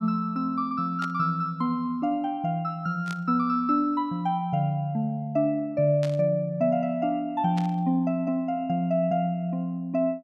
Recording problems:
burst of static; 4 times, first at 1 s; peak -9 dB vs average level

